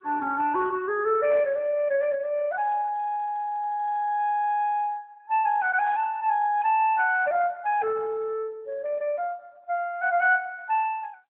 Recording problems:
telephone audio; 320 Hz to 3.3 kHz, AMR-NB

